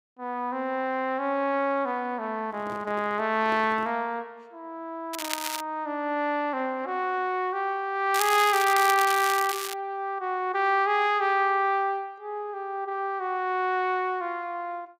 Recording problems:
handling noise; from 2.5 to 4 s; peak -10 dB vs average level
crackle; at 5 s and from 8 to 9.5 s; loose cable, SNR 6 dB

